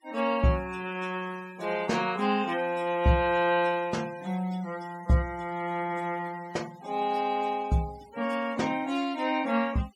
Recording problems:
denoising artefacts; signal-to-artefact ratio 21 dB

